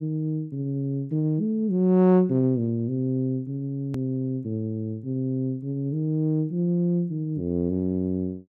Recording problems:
edit click; at 4 s

